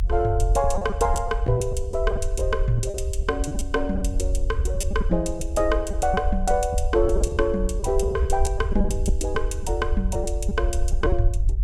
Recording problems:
rumble; below 64 Hz, SNR 2 dB
lost packets; 8% of the sound replaced, filled with repeated pitch periods

